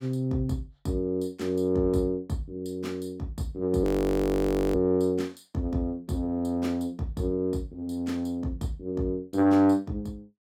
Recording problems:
audio freezing; at 4 s for 1 s

